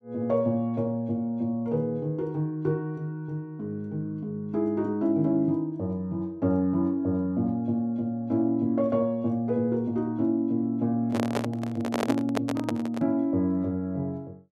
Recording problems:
handling noise; from 11 to 13 s; peak +3 dB vs average level

